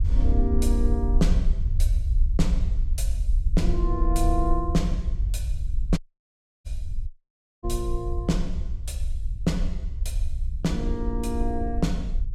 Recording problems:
rumble; below 60 Hz, SNR -2 dB
dropout; at 6 s for 0.5 s and at 7 s for 0.5 s

